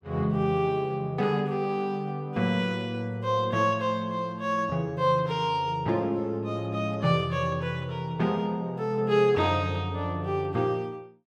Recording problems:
none

